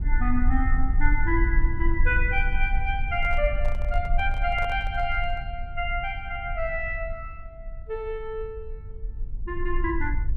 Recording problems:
low-frequency rumble; below 48 Hz, strongest tone 18 Hz, SNR 1 dB
microphone handling noise; from 3 to 5.5 s; peak -8 dB vs average level

